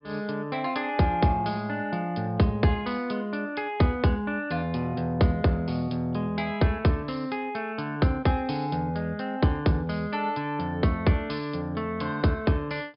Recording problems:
treble missing; nothing above 5.1 kHz

